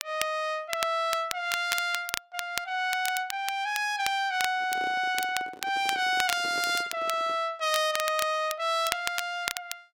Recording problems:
crackle; vinyl, SNR 8 dB
microphone handling noise; from 4.5 to 7.5 s; peak -10 dB vs average level

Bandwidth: 16.5 kHz